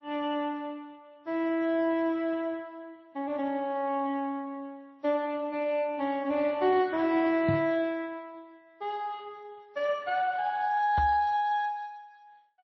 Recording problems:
codec artefacts; Speex, then MP3, log-spectral distance 2 dB, nothing above 5.7 kHz
knock on the microphone; at 7.5 s and at 11 s; peak +4 dB vs average level

